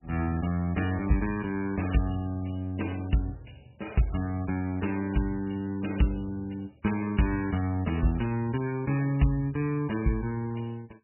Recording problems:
codec artefacts; MP3, log-spectral distance 5 dB, nothing above 2.9 kHz

